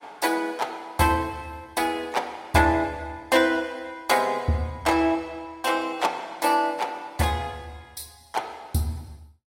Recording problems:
codec artefacts; AAC, log-spectral distance 3 dB, nothing above 16 kHz

